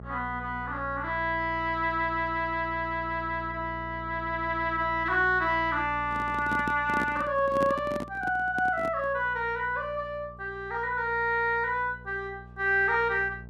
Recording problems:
electrical hum; 60 Hz, harmonics up to 840 Hz, SNR 17 dB
handling noise; from 6 to 9 s; peak -1 dB vs average level

